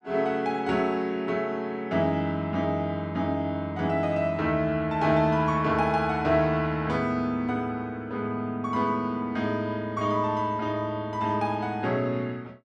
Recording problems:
none

